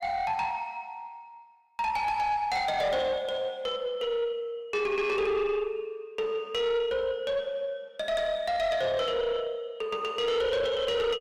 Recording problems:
distorted audio; soft clipping, signal-to-distortion ratio 11 dB

